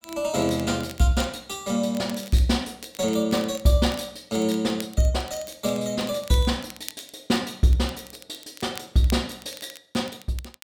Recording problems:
crackling; vinyl, SNR 19 dB

